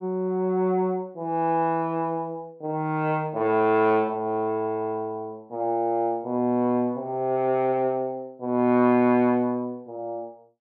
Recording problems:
none

